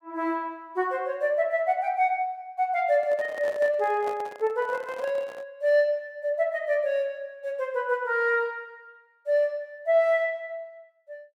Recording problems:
microphone handling noise; from 3 to 5.5 s; peak -8 dB vs average level

